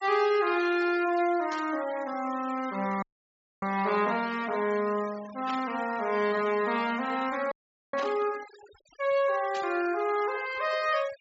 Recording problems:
treble cut off; nothing above 8 kHz
denoising artefacts; signal-to-artefact ratio 17 dB
burst of static; 4 times, first at 1.5 s; peak -8 dB vs average level
frozen audio; at 3 s for 0.5 s and at 7.5 s

